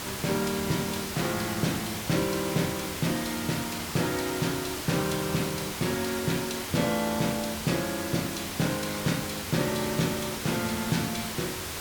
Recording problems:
hiss; slope -2 dB per octave, SNR 4 dB

